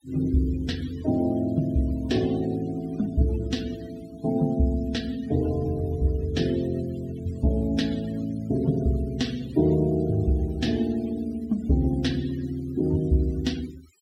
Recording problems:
denoising artefacts; signal-to-artefact ratio 19 dB

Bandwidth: 16 kHz